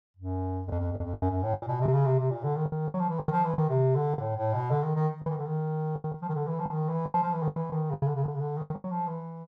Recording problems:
packet loss; 12% of the sound replaced, filled with the last packet

